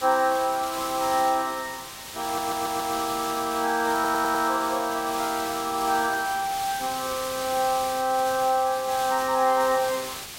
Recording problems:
background hiss; slope 0 dB per octave, SNR 9 dB
stutter; at 2.5 s and at 4 s

